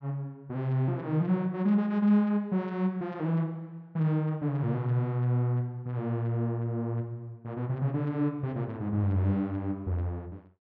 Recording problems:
none

